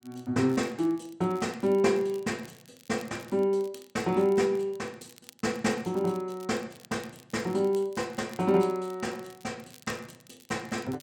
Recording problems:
crackle; vinyl, SNR 24 dB

